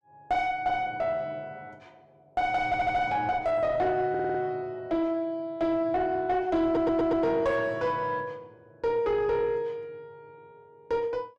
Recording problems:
distorted audio; soft clipping, signal-to-distortion ratio 9 dB
stutter; at 2.5 s, at 4 s and at 6.5 s

